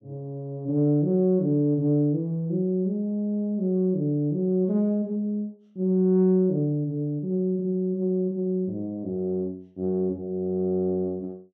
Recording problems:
none

